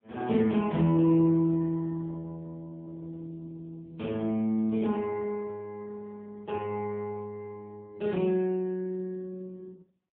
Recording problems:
telephone audio; 110 Hz to 3.3 kHz, AMR-NB, then MP3

